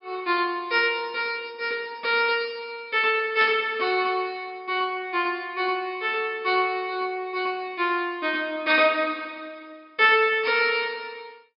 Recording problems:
treble missing; nothing above 5.5 kHz
static burst; at 3.5 s; peak -5 dB vs average level

